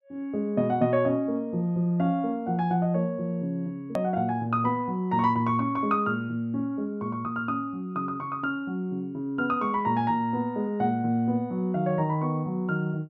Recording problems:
edit click; at 4 s

